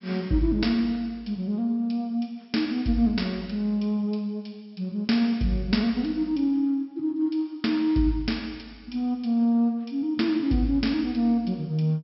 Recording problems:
treble cut off; nothing above 5.4 kHz

